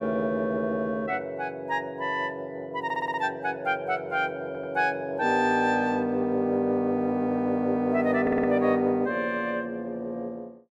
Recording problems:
stutter; at 3 s, at 4.5 s and at 8 s

